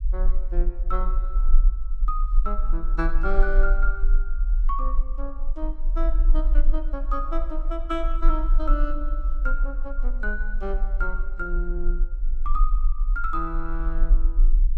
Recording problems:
rumble; below 36 Hz, strongest tone 20 Hz, SNR -6 dB

